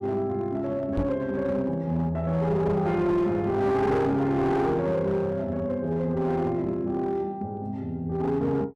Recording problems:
distorted audio; hard clipping, uneven, signal-to-distortion ratio 11 dB
microphone bump; at 1 s; peak +1 dB vs average level

